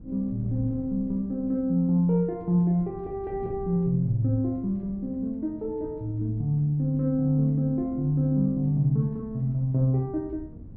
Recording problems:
wind noise; below 180 Hz, SNR 18 dB

